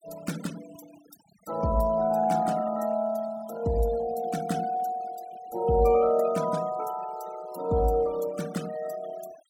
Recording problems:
noise reduction artefacts; signal-to-artefact ratio 20 dB

